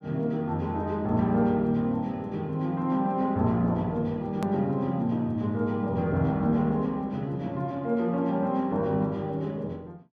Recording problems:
click at an edit; at 4.5 s

